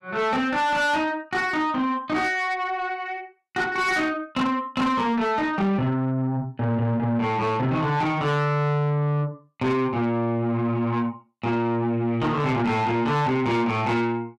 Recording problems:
distorted audio; soft clipping, signal-to-distortion ratio 10 dB

